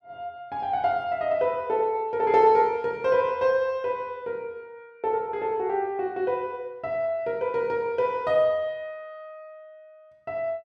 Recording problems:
none

